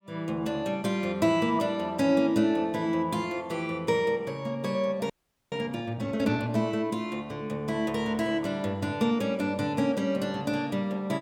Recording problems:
frozen audio; at 5 s

